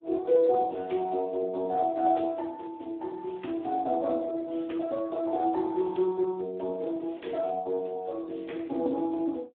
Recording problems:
phone line; 220 Hz to 3.6 kHz, Speex

